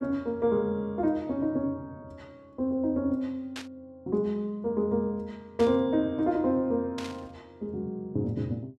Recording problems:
burst of static; at 3.5 s, at 5.5 s and at 7 s; peak -6 dB vs average level

